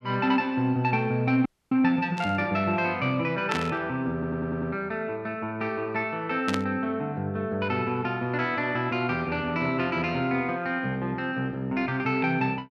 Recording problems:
audio freezing; at 1.5 s
burst of static; at 2 s, at 3.5 s and at 6.5 s; peak 0 dB vs average level
audio stuttering; at 4 s

